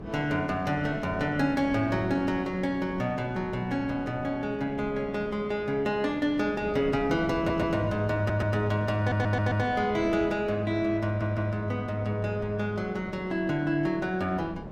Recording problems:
wind noise; below 410 Hz, SNR 13 dB
stutter; 4 times, first at 7.5 s

